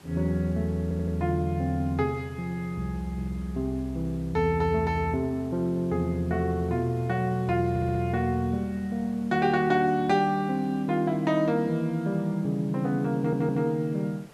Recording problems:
background hiss; slope -5 dB per octave, SNR 25 dB
audio stuttering; at 1 s, at 7.5 s and at 13 s

